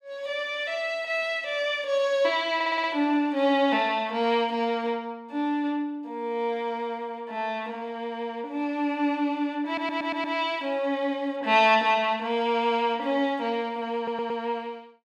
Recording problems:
stutter; at 2.5 s, at 9.5 s and at 14 s

